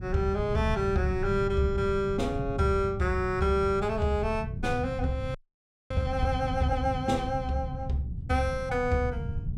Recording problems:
rumble; below 140 Hz, SNR 7 dB
audio freezing; at 5.5 s for 0.5 s

